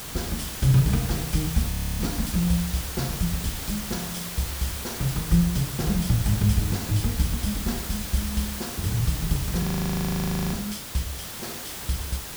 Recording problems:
hiss; slope -1 dB per octave, SNR 6 dB
frozen audio; at 1.5 s and at 9.5 s for 1 s

